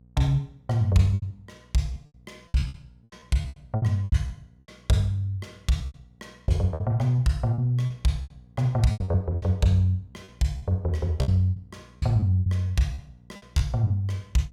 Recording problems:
electrical hum; 60 Hz, harmonics up to 540 Hz, SNR 29 dB
packet loss; 15% of the sound replaced, filled with repeated pitch periods

